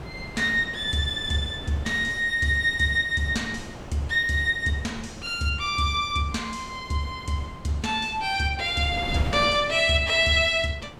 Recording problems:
wind on the microphone; below 640 Hz, SNR 15 dB

